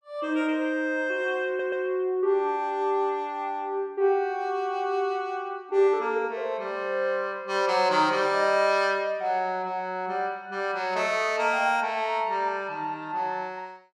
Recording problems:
stutter; at 1.5 s

